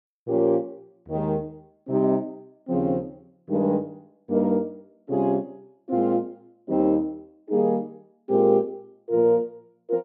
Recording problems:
none

